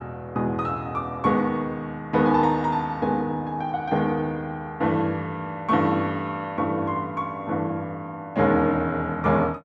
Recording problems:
none

